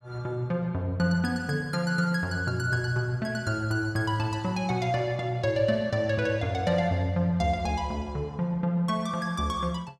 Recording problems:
none

